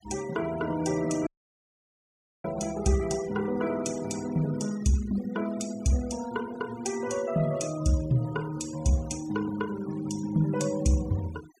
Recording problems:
denoising artefacts; signal-to-artefact ratio 18 dB
audio cutting out; at 1.5 s for 1 s

